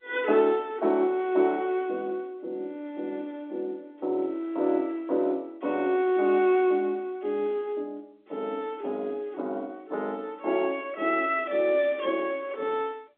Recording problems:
phone line; 240 Hz to 3.9 kHz, G.711

